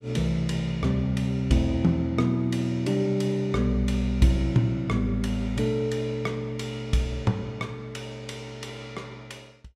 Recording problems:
none

